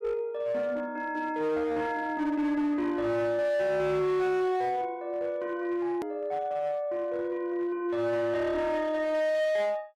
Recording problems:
distortion; hard clipping, uneven, signal-to-distortion ratio 10 dB
edit click; at 6 s

